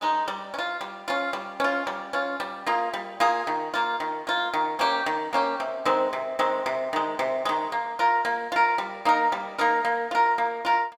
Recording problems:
none

